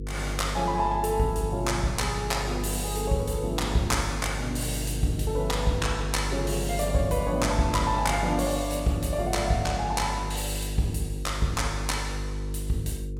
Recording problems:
electrical hum; 50 Hz, harmonics up to 500 Hz, SNR 5 dB

